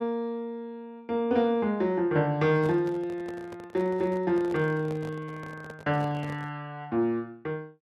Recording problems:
handling noise; from 2.5 to 6.5 s; peak -9 dB vs average level

